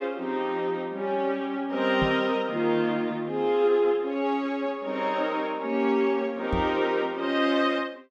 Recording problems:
microphone bump; at 2 s and at 6.5 s; peak 0 dB vs average level

